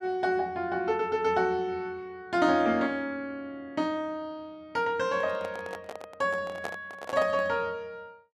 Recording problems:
microphone handling noise; from 5 to 7.5 s; peak -1 dB vs average level

